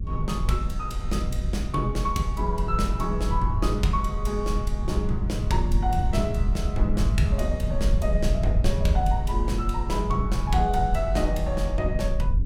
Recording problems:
low-frequency rumble; below 76 Hz, SNR -1 dB

